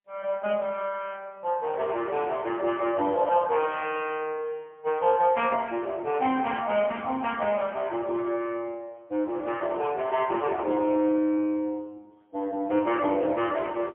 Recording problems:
telephone audio; 260 Hz to 3.3 kHz, AMR-NB, then MP3

